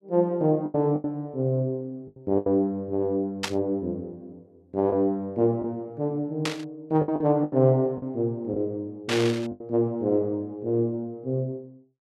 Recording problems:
lost packets; 6% of the sound replaced, filled with the last packet
burst of static; at 3.5 s, at 6.5 s and at 9 s; peak +3 dB vs average level

